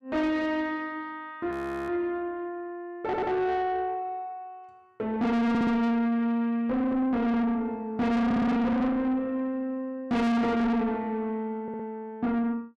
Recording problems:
distortion; soft clipping, signal-to-distortion ratio 6 dB
audio freezing; at 1.5 s
audio stuttering; 4 times, first at 3 s

